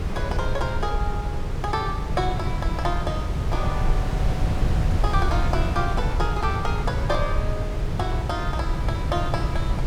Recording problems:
wind noise; below 130 Hz, SNR -3 dB

